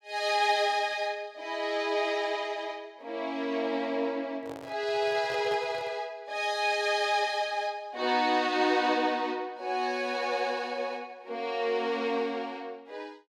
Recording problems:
handling noise; from 4.5 to 6 s; peak -8 dB vs average level

